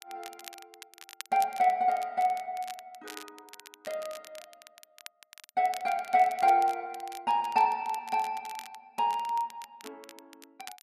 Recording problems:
crackling; vinyl, SNR 20 dB

